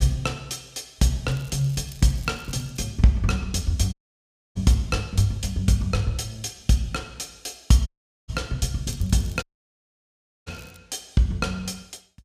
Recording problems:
crackling; from 1.5 to 3 s and from 9 to 11 s; loose cable, SNR 24 dB
audio cutting out; at 4 s for 0.5 s, at 8 s and at 9.5 s for 1 s

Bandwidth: 15 kHz